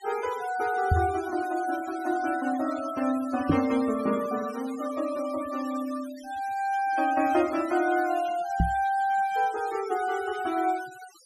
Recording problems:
denoising artefacts; signal-to-artefact ratio 17 dB
microphone thump; at 1 s, at 3.5 s and at 8.5 s; peak +8 dB vs average level

